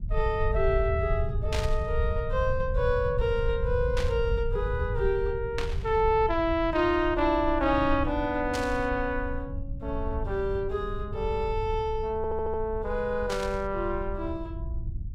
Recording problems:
rumble; below 82 Hz, SNR 6 dB
burst of static; 5 times, first at 1.5 s; peak -2 dB vs average level
stutter; at 12 s

